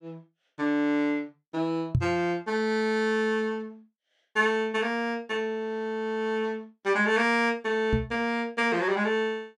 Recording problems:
microphone bump; at 2 s and at 8 s; peak +6 dB vs average level

